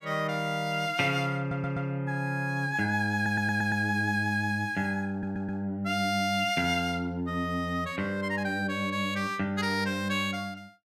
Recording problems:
stutter; at 1.5 s, at 3 s and at 5 s

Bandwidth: 15 kHz